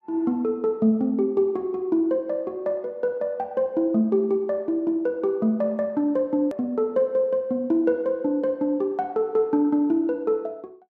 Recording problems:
click at an edit; at 6.5 s

